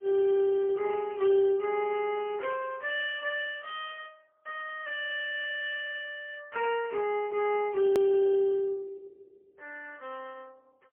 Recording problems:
telephone audio; 300 Hz to 3.1 kHz, AMR-NB, then MP3
hard cut with a click; at 8 s

